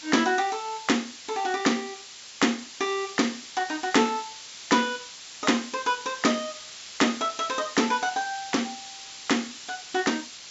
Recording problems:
low-pass filter; nothing above 8 kHz
background hiss; slope +3 dB per octave, SNR 13 dB

